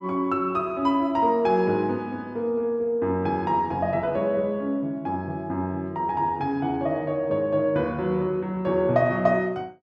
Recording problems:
none

